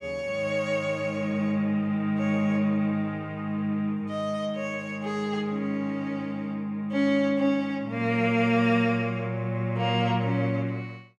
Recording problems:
none

